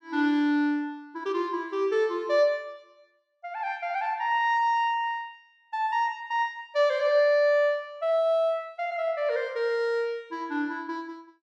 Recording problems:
none

